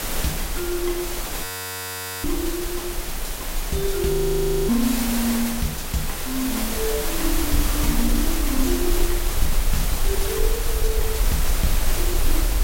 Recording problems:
distorted audio; soft clipping, signal-to-distortion ratio 12 dB
background hiss; slope -3 dB per octave, SNR 1 dB
rumble; below 42 Hz, strongest tone 18 Hz, SNR 3 dB
audio freezing; at 1.5 s for 1 s and at 4 s for 0.5 s

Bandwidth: 16 kHz